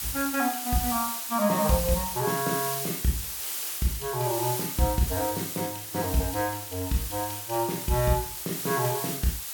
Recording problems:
background hiss; slope +2 dB per octave, SNR 3 dB

